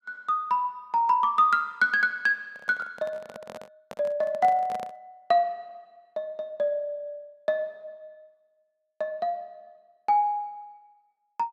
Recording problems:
handling noise; from 2.5 to 5 s; peak -9 dB vs average level

